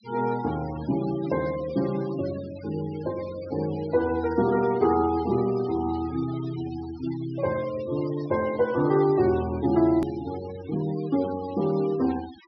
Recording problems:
treble missing; nothing above 5.5 kHz
noise reduction artefacts; signal-to-artefact ratio 19 dB
hard cut with a click; at 10 s

